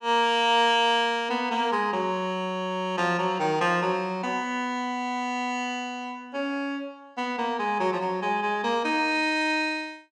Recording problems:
none

